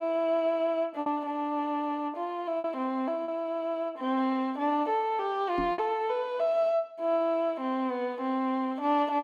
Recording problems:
lost packets; 2% of the sound replaced, filled with repeated pitch periods
knock on the microphone; at 5.5 s; peak -1 dB vs average level

